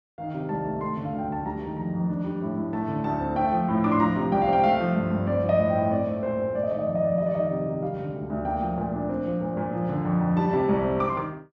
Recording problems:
none

